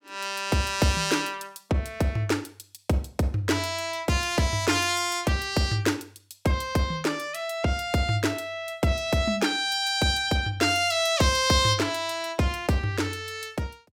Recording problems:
none

